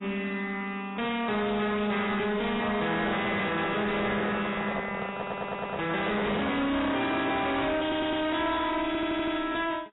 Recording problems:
lossy codec; AAC, log-spectral distance 5 dB, nothing above 3.8 kHz
distortion; soft clipping, signal-to-distortion ratio 5 dB
handling noise; from 3 to 6.5 s; peak +3 dB vs average level
stutter; at 5 s, at 8 s and at 9 s

